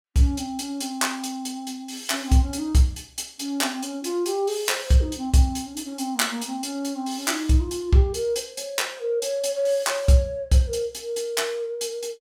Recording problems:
none

